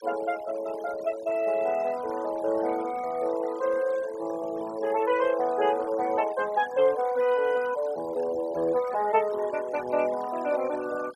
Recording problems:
noise reduction artefacts; signal-to-artefact ratio 19 dB

